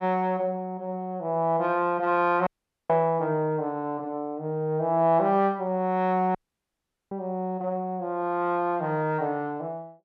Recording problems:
audio cutting out; at 2.5 s and at 6.5 s for 1 s

